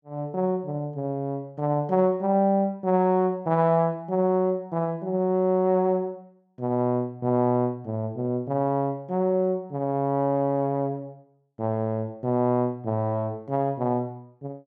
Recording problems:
none

